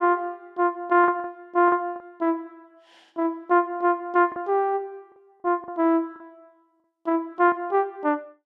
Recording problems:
lost packets; 5% of the sound replaced, filled with the last packet

